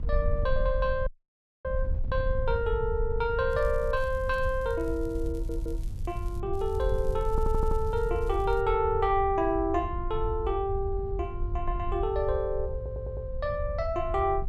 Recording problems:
wind noise; below 68 Hz, SNR 5 dB
audio cutting out; at 1 s for 0.5 s
crackling; from 3.5 to 6.5 s and from 6.5 to 8.5 s; loose cable, SNR 27 dB
audio stuttering; at 5.5 s, at 7.5 s and at 13 s

